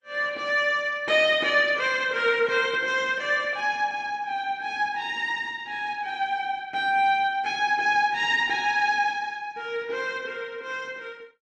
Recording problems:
codec artefacts; Opus, log-spectral distance 2 dB

